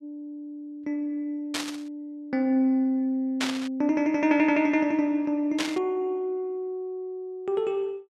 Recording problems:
burst of static; at 1.5 s, at 3.5 s and at 5.5 s; peak +2 dB vs average level

